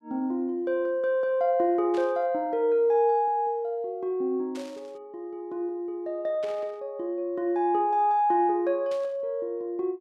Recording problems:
static burst; 4 times, first at 2 s; peak -14 dB vs average level

